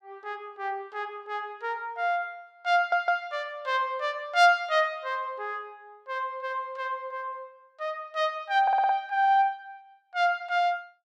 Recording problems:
stutter; at 3 s and at 8.5 s

